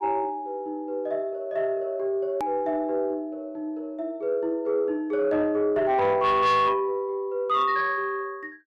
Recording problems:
distortion; soft clipping, signal-to-distortion ratio 12 dB
edit click; at 2.5 s

